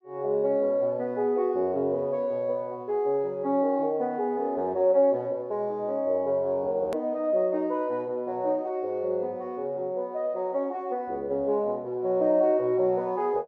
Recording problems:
edit click; at 7 s

